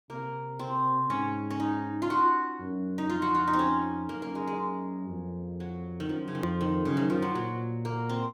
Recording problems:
click at an edit; at 6.5 s

